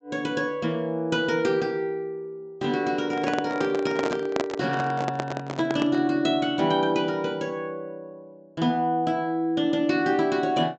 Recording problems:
treble missing; nothing above 8 kHz
microphone handling noise; from 3 to 6 s; peak +3 dB vs average level

